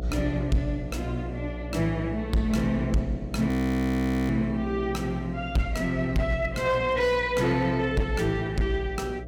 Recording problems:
distorted audio; hard clipping, signal-to-distortion ratio 11 dB
hum; 60 Hz, harmonics up to 720 Hz, SNR 10 dB
audio freezing; at 3.5 s for 1 s

